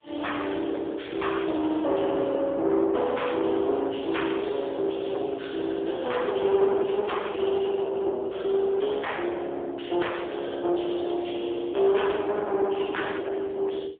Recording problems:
phone line; 280 Hz to 3.6 kHz, AMR-NB, then MP3
distortion; soft clipping, signal-to-distortion ratio 9 dB

